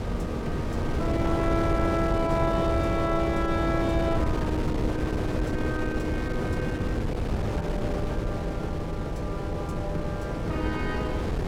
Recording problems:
wind noise; below 400 Hz, SNR 0 dB

